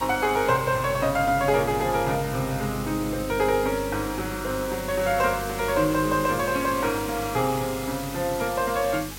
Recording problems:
hum; 50 Hz, harmonics up to 500 Hz, SNR 14 dB
hiss; slope 0 dB per octave, SNR 12 dB

